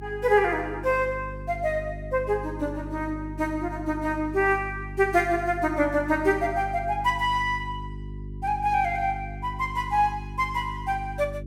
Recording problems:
hum; 50 Hz, harmonics up to 400 Hz, SNR 12 dB

